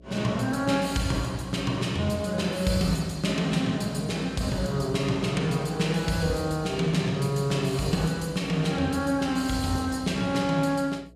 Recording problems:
hum; 60 Hz, harmonics up to 660 Hz, SNR 22 dB

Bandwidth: 15.5 kHz